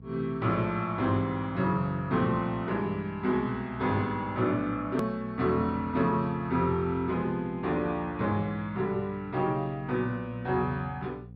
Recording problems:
treble cut off; nothing above 5.5 kHz
electrical hum; 60 Hz, harmonics up to 540 Hz, SNR 19 dB
edit click; at 5 s

